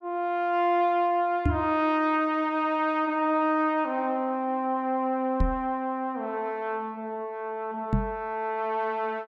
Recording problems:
knock on the microphone; at 1.5 s, at 5.5 s and at 8 s; peak +5 dB vs average level

